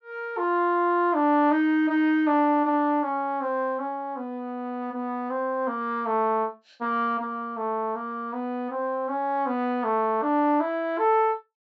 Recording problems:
treble missing; nothing above 7.8 kHz

